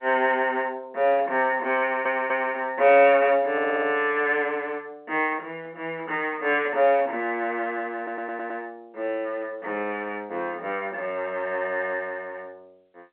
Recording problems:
phone line; 300 Hz to 3.3 kHz, G.711
stutter; at 2 s, at 3.5 s and at 8 s

